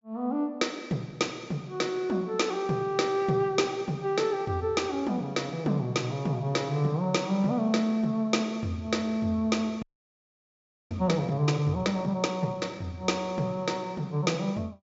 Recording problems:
treble missing; nothing above 8 kHz
audio freezing; at 10 s for 1 s

